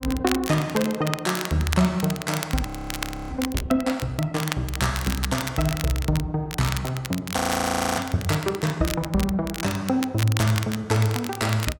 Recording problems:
crackle; vinyl, SNR 9 dB
audio freezing; at 2.5 s for 0.5 s and at 7.5 s for 0.5 s

